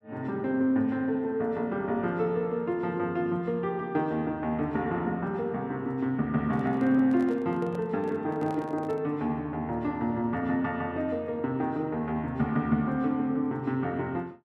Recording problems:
microphone handling noise; from 6.5 to 9 s; peak -10 dB vs average level

